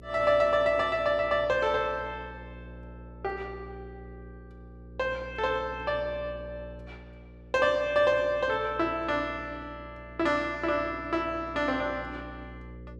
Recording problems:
mains hum; 60 Hz, harmonics up to 540 Hz, SNR 18 dB

